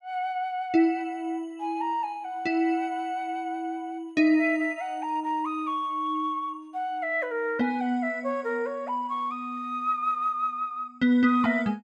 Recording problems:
none

